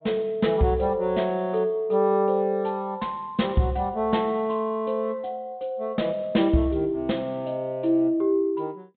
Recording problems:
low-pass filter; nothing above 4 kHz

